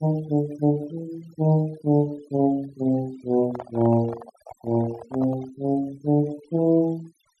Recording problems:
noise reduction artefacts; signal-to-artefact ratio 23 dB
handling noise; from 3.5 to 5.5 s; peak -7 dB vs average level

